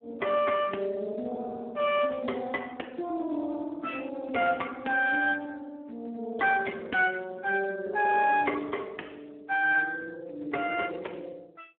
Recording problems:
telephone audio; 260 Hz to 3 kHz, Speex

